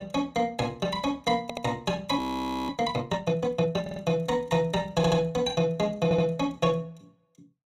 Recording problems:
audio stuttering; 4 times, first at 1.5 s
audio freezing; at 2 s for 0.5 s

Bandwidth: 15 kHz